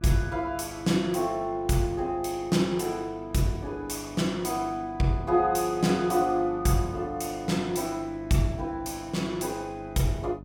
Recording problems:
hum; 50 Hz, harmonics up to 700 Hz, SNR 18 dB

